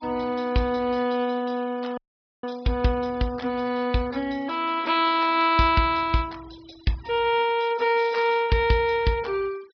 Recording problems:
low-pass filter; nothing above 5.5 kHz
noise reduction artefacts; signal-to-artefact ratio 24 dB
dropout; at 2 s

